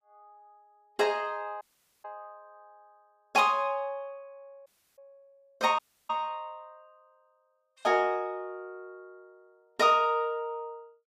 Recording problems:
audio cutting out; at 1.5 s, at 4.5 s and at 6 s

